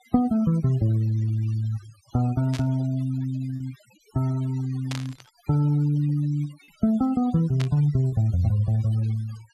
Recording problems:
denoising artefacts; signal-to-artefact ratio 22 dB
packet loss; 1% of the sound replaced, filled with repeated pitch periods
burst of static; at 2.5 s, at 5 s and at 7.5 s; peak -5 dB vs average level

